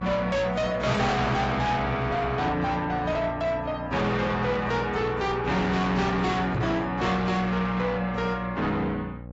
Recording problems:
lossy compression; AAC, log-spectral distance 2 dB, nothing above 7.6 kHz
distorted audio; soft clipping, signal-to-distortion ratio 7 dB
mains hum; 60 Hz, harmonics up to 840 Hz, SNR 13 dB
microphone bump; at 6.5 s; peak +2 dB vs average level

